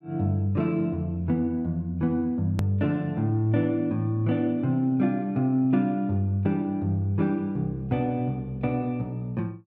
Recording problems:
edit click; at 2.5 s

